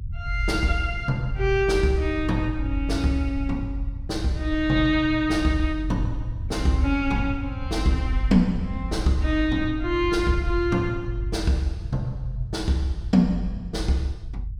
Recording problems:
rumble; below 76 Hz, strongest tone 48 Hz, SNR 6 dB

